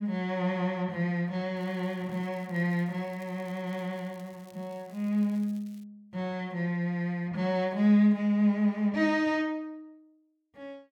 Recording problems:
crackle; from 1.5 to 6 s; loose cable, SNR 30 dB

